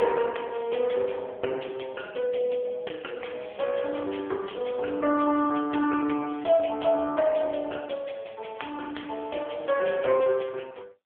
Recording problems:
telephone audio; 260 Hz to 3.3 kHz, AMR-NB

